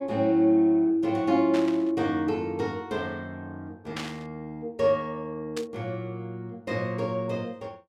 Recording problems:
burst of static; at 1.5 s, at 4 s and at 5.5 s; peak -5 dB vs average level

